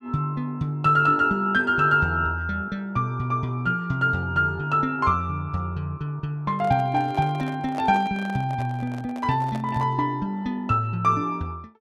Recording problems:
microphone handling noise; from 6.5 to 10 s; peak -7 dB vs average level

